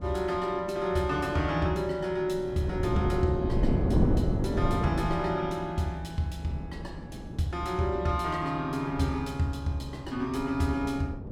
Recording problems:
wind noise; below 290 Hz, SNR 2 dB

